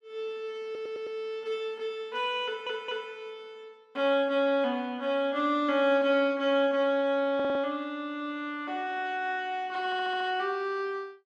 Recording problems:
audio stuttering; 4 times, first at 0.5 s

